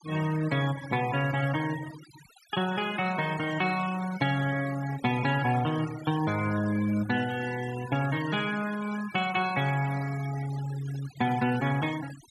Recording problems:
denoising artefacts; signal-to-artefact ratio 14 dB

